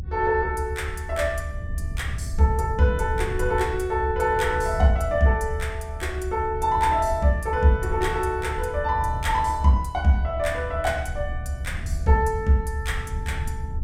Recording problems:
rumble; below 78 Hz, SNR 7 dB

